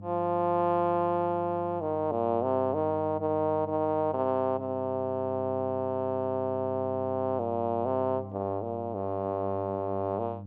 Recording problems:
mains hum; 50 Hz, harmonics up to 600 Hz, SNR 14 dB

